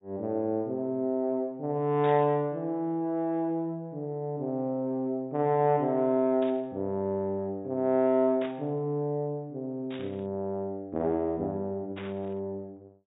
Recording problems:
low-pass filter; nothing above 4 kHz
burst of static; 5 times, first at 2 s; peak -9 dB vs average level

